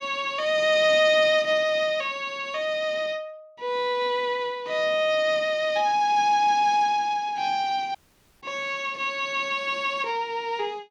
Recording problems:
dropout; at 8 s

